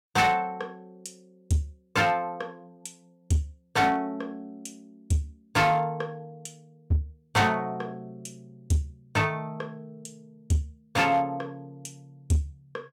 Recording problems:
distorted audio; hard clipping, uneven, signal-to-distortion ratio 12 dB

